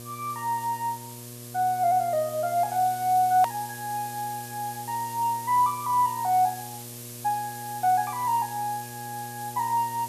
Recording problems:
hum; 60 Hz, harmonics up to 1.2 kHz, SNR 17 dB
hiss; SNR 13 dB
hard cut with a click; at 3.5 s

